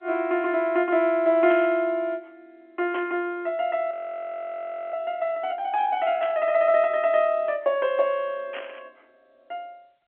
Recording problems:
phone line; 240 Hz to 3.3 kHz, G.711
burst of static; 4 times, first at 1.5 s; peak -9 dB vs average level
frozen audio; at 4 s for 1 s

